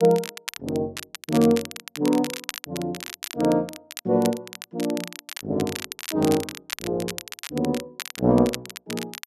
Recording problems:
crackling; vinyl, SNR 10 dB

